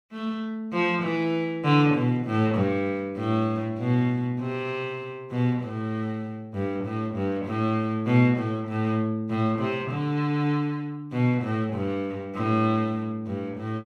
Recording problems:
none

